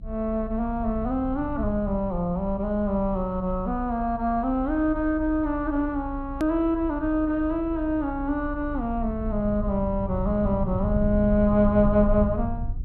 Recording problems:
lossy compression; MP2, log-spectral distance 2 dB, nothing above 13.1 kHz
low-frequency rumble; below 100 Hz, SNR 9 dB
click at an edit; at 6.5 s

